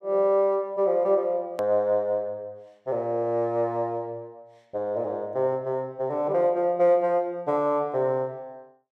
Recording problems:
hard cut with a click; at 1.5 s

